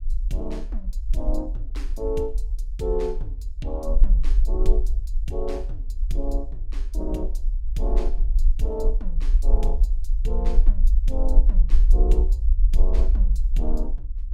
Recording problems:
rumble; below 42 Hz, SNR -8 dB

